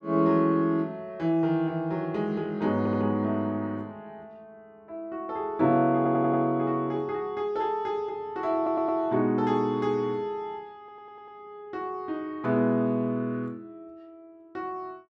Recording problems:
stutter; 4 times, first at 3 s

